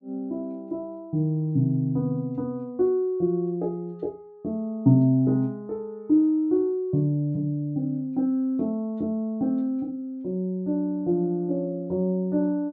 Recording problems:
none

